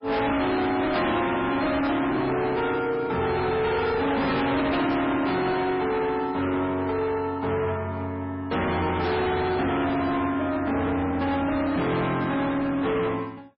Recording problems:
lossy codec; MP3, log-spectral distance 3 dB, nothing above 4.9 kHz
distortion; hard clipping, signal-to-distortion ratio 6 dB

